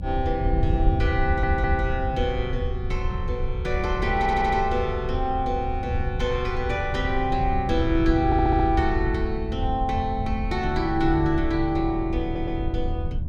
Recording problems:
low-frequency rumble; below 100 Hz, SNR 5 dB
wind on the microphone; below 76 Hz, SNR 7 dB
audio stuttering; 4 times, first at 1 s

